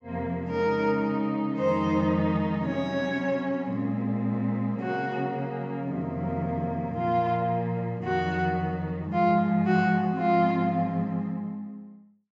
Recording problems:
low-pass filter; nothing above 8 kHz

